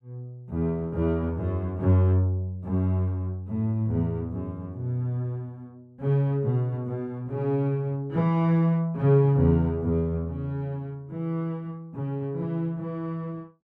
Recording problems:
none

